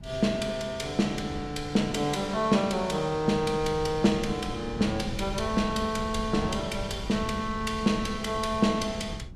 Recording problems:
wind on the microphone; below 140 Hz, SNR 13 dB

